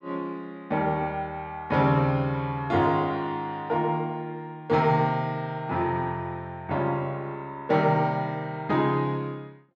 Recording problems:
none

